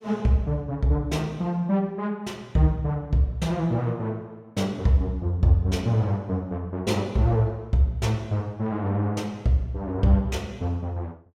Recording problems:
none

